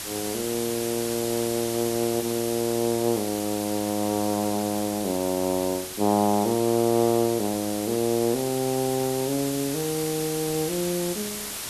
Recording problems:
background hiss; slope 0 dB per octave, SNR 7 dB

